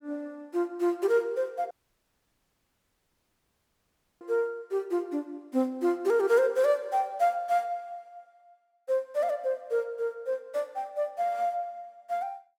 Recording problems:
dropout; at 1.5 s for 2.5 s

